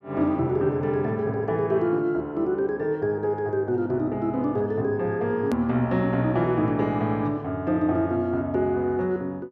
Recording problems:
edit click; at 5.5 s

